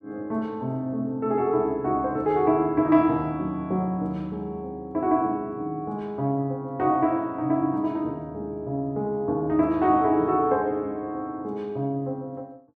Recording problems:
none

